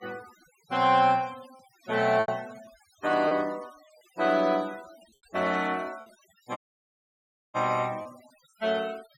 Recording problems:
denoising artefacts; signal-to-artefact ratio 23 dB
lost packets; 4% of the sound replaced, filled with repeated pitch periods
audio cutting out; at 6.5 s for 1 s

